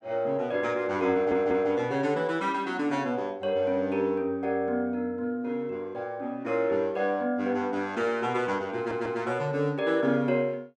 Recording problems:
audio stuttering; at 1 s and at 9 s

